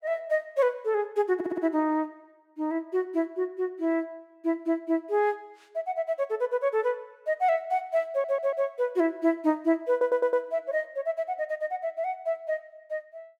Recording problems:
stutter; at 1.5 s, at 8 s and at 10 s

